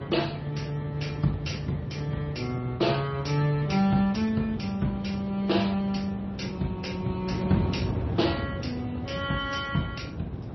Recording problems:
codec artefacts; Speex, then MP3, log-spectral distance 3 dB, nothing above 5.8 kHz
wind noise; below 330 Hz, SNR 7 dB

